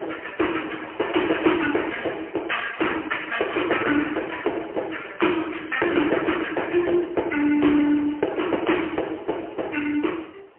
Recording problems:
telephone audio; 280 Hz to 3.1 kHz, AMR-NB, then MP3
wind on the microphone; below 1.5 kHz, SNR 23 dB

